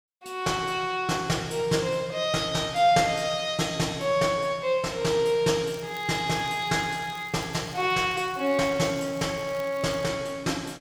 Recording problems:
crackling; from 5.5 to 10 s; loose cable, SNR 24 dB

